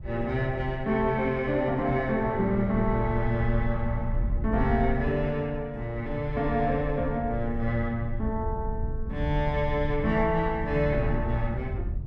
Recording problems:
wind noise; below 80 Hz, SNR 7 dB

